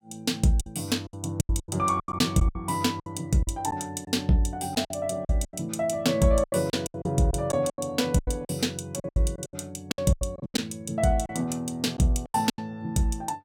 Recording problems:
lost packets; 14% of the sound replaced, filled with silence

